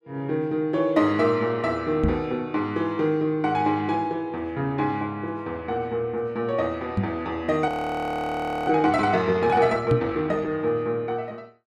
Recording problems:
microphone bump; at 2 s, at 7 s and at 10 s; peak +5 dB vs average level
audio freezing; at 7.5 s for 1 s

